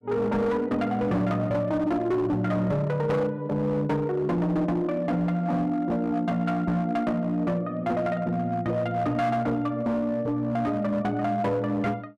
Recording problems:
distorted audio; hard clipping, signal-to-distortion ratio 11 dB

